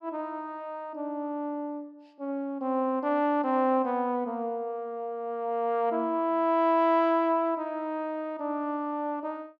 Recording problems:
none

